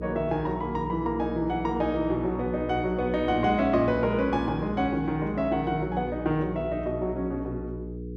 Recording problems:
electrical hum; 60 Hz, harmonics up to 480 Hz, SNR 10 dB

